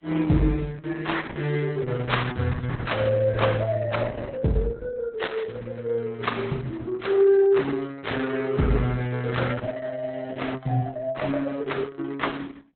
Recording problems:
lossy compression; Vorbis, then Opus, log-spectral distance 3 dB, nothing above 4 kHz

